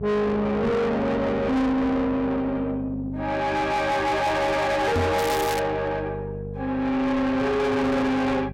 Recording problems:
distortion; soft clipping, signal-to-distortion ratio 6 dB
electrical hum; 50 Hz, harmonics up to 650 Hz, SNR 12 dB
microphone thump; at 5 s; peak +6 dB vs average level
crackle; at 5 s; loose cable, SNR 9 dB

